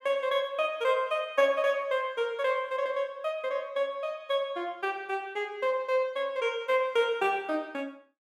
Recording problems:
none

